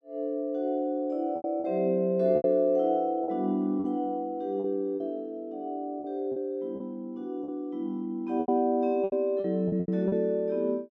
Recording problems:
packet loss; 8% of the sound replaced, filled with repeated pitch periods

